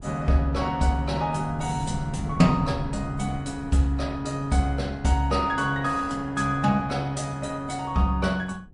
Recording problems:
codec artefacts; MP3, log-spectral distance 2 dB, nothing above 10.4 kHz
wind on the microphone; below 180 Hz, SNR 14 dB

